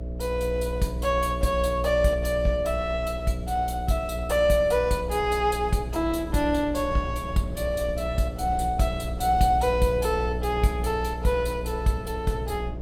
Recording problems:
hum; 60 Hz, harmonics up to 660 Hz, SNR 7 dB
low-frequency rumble; below 170 Hz, SNR 17 dB

